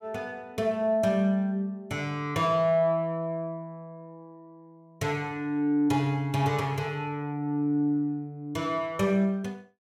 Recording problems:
none

